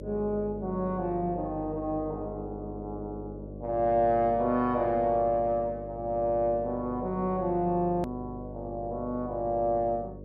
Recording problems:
hum; 50 Hz, harmonics up to 600 Hz, SNR 12 dB
edit click; at 8 s

